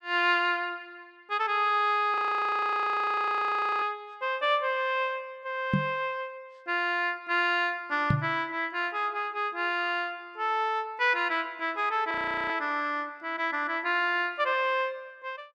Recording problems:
audio freezing; at 2 s for 1.5 s and at 12 s
microphone thump; at 5.5 s and at 8 s; peak +6 dB vs average level

